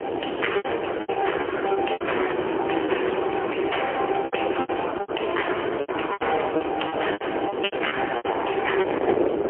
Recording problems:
phone line; 300 Hz to 3.2 kHz, AMR-NB, then MP3
distorted audio; hard clipping, signal-to-distortion ratio 13 dB
background hiss; SNR 21 dB
wind noise; below 700 Hz, SNR 3 dB
packet loss; 13% of the sound replaced, filled with repeated pitch periods

